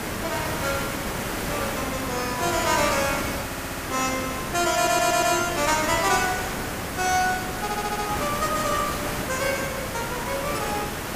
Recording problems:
background hiss; slope -5 dB per octave, SNR 3 dB
audio stuttering; at 3.5 s, at 5 s and at 7.5 s

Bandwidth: 15 kHz